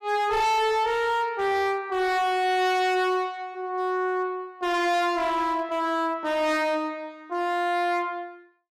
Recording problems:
distortion; hard clipping, signal-to-distortion ratio 6 dB

